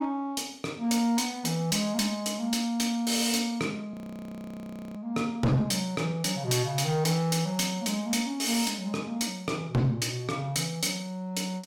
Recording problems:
distorted audio; hard clipping, uneven, signal-to-distortion ratio 11 dB
frozen audio; at 4 s for 1 s

